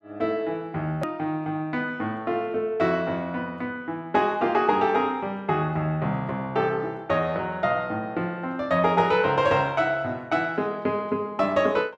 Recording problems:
edit click; at 1 s

